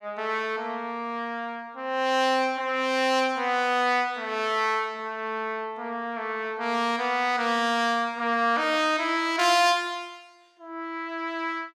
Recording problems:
none

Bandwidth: 15.5 kHz